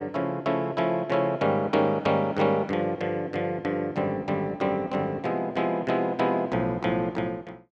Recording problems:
none

